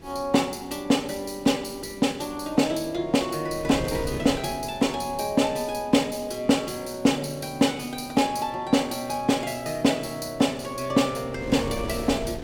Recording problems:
wind noise; below 450 Hz, SNR 16 dB

